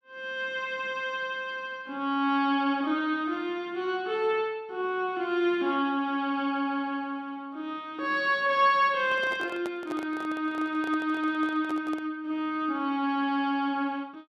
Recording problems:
handling noise; from 9 to 12 s; peak -6 dB vs average level

